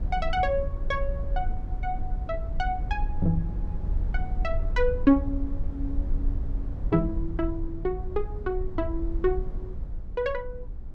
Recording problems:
rumble; below 60 Hz, SNR 4 dB

